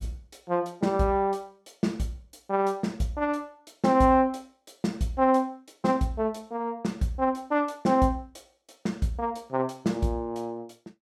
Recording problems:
none

